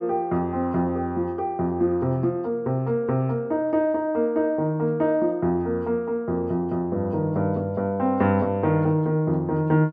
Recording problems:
none

